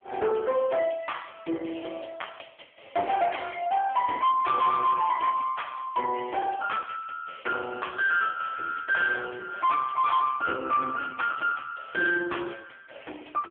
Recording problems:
telephone audio; 260 Hz to 3.4 kHz, AMR-NB
distortion; hard clipping, uneven, signal-to-distortion ratio 11 dB

